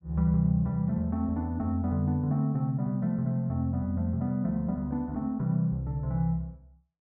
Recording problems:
none

